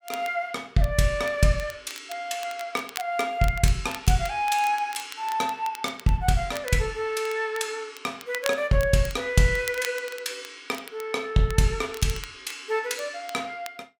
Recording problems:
crackling; vinyl, SNR 16 dB

